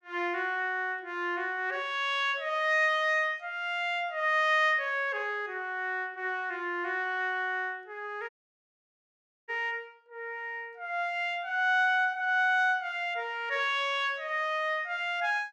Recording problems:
dropout; at 8.5 s for 1 s

